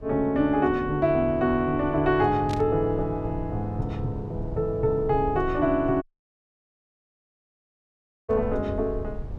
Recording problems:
rumble; below 110 Hz, SNR 14 dB
static burst; at 2.5 s and at 8.5 s; peak -9 dB vs average level
audio cutting out; at 6 s for 2.5 s

